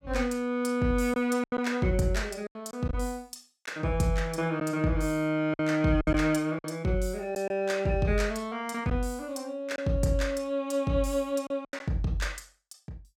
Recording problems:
packet loss; 5% of the sound replaced, filled with silence

